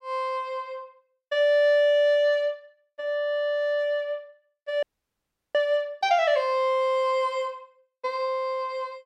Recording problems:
dropout; at 5 s for 0.5 s

